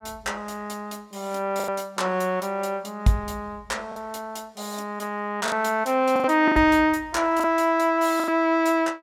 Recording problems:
lost packets; 5% of the sound replaced, filled with the last packet

